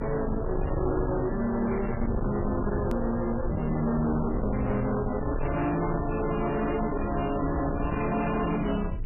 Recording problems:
lossy compression; MP3, log-spectral distance 4 dB, nothing above 2.4 kHz
distorted audio; soft clipping, signal-to-distortion ratio 8 dB
hum; 50 Hz, harmonics up to 500 Hz, SNR 20 dB
low-frequency rumble; below 260 Hz, SNR 5 dB
click at an edit; at 3 s

